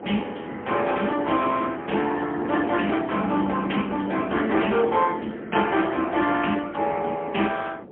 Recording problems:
phone line; 220 Hz to 3.3 kHz, AMR-NB, then MP3
wind noise; below 510 Hz, SNR 11 dB

